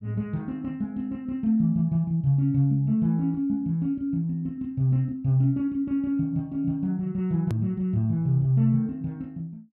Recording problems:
edit click; at 7.5 s

